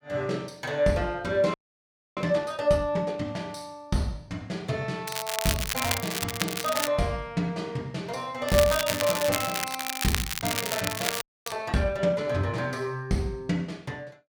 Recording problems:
audio freezing; at 1.5 s for 0.5 s and at 11 s
crackle; from 5 to 7 s and from 8.5 to 12 s; loose cable, SNR 1 dB

